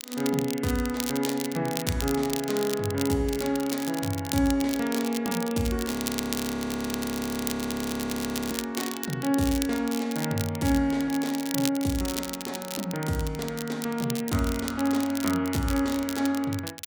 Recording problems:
crackle; vinyl, SNR 8 dB
audio freezing; at 6 s for 2.5 s

